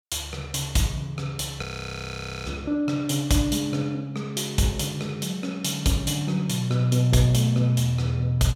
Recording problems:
audio freezing; at 1.5 s for 1 s

